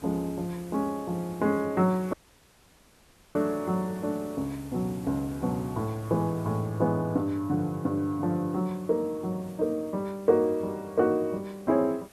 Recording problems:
background hiss; slope -4 dB per octave, SNR 23 dB
dropout; at 2 s for 1 s

